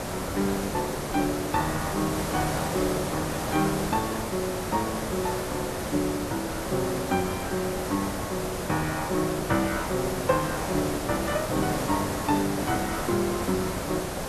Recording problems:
hiss; slope -6 dB per octave, SNR 2 dB

